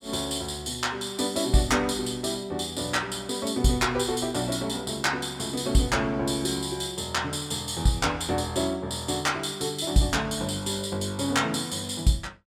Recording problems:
none

